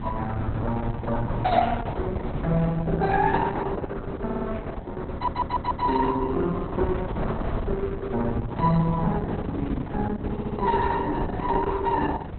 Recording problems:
lossy compression; Opus, log-spectral distance 3 dB, nothing above 4 kHz
wind noise; below 250 Hz, SNR 7 dB
audio stuttering; at 4 s, at 5 s and at 10 s

